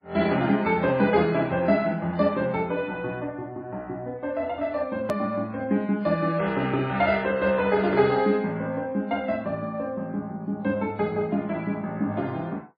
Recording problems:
lossy codec; MP3, log-spectral distance 2 dB, nothing above 13.3 kHz
hard cut with a click; at 5 s

